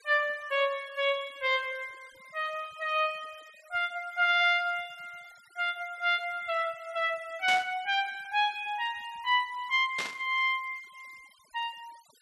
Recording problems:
noise reduction artefacts; signal-to-artefact ratio 25 dB
static burst; at 7.5 s and at 10 s; peak -1 dB vs average level

